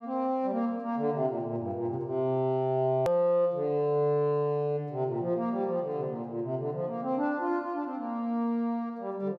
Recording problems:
edit click; at 3 s

